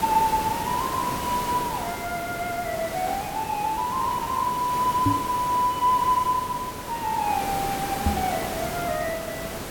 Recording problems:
background hiss; slope -5 dB per octave, SNR 6 dB
microphone bump; at 5 s and at 8 s; peak +6 dB vs average level

